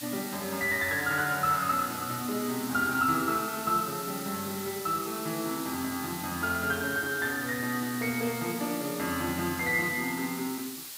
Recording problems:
background hiss; slope +2 dB per octave, SNR 8 dB

